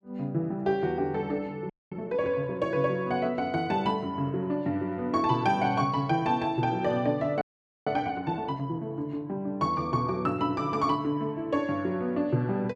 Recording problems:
audio freezing; at 1.5 s and at 7.5 s

